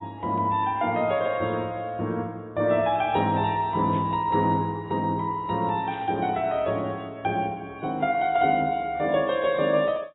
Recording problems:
codec artefacts; AAC, log-spectral distance 2 dB, nothing above 3.2 kHz
static burst; at 4 s and at 6 s; peak -17 dB vs average level

